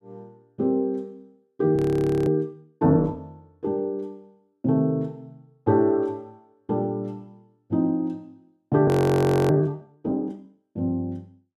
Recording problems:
frozen audio; at 2 s and at 9 s for 0.5 s

